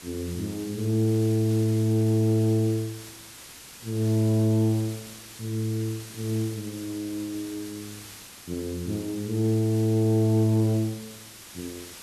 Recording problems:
background hiss; slope 0 dB per octave, SNR 16 dB

